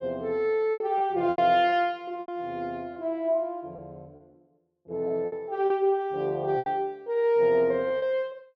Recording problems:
lost packets; 8% of the sound replaced, filled with repeated pitch periods

